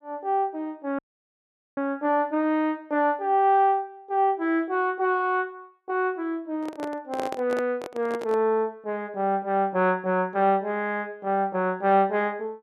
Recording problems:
audio cutting out; at 1 s for 1 s
handling noise; from 6.5 to 8.5 s; peak -4 dB vs average level

